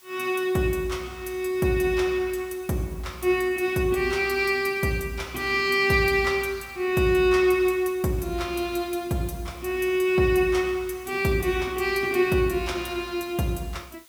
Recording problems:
hiss; slope +1 dB per octave, SNR 27 dB

